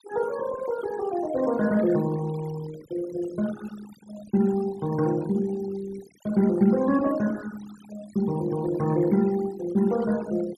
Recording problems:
noise reduction artefacts; signal-to-artefact ratio 17 dB

